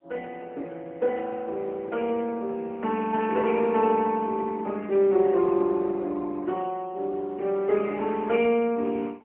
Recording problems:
phone line; 220 Hz to 3.3 kHz, AMR-NB, then MP3

